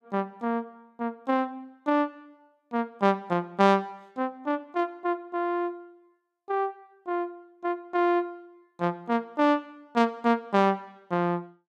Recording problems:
none

